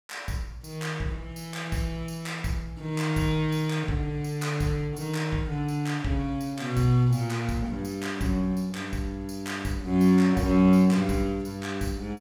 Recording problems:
none

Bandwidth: 17.5 kHz